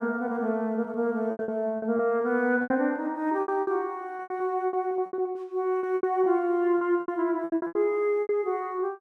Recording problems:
lost packets; 15% of the sound replaced, filled with repeated pitch periods

